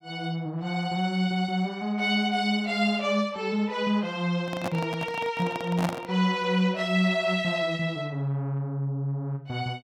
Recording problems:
microphone handling noise; from 4.5 to 6 s; peak +1 dB vs average level

